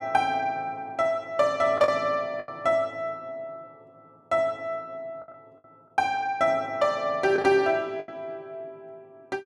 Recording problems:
lost packets; 4% of the sound replaced, filled with the last packet

